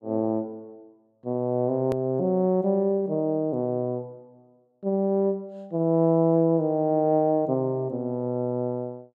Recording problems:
click at an edit; at 2 s

